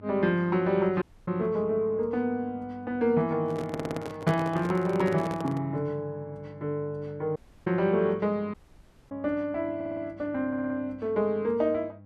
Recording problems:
hum; 50 Hz, harmonics up to 800 Hz, SNR 21 dB
audio cutting out; at 1 s, at 7.5 s and at 8.5 s for 0.5 s
handling noise; from 3.5 to 5.5 s; peak -1 dB vs average level
audio stuttering; at 3.5 s and at 10 s

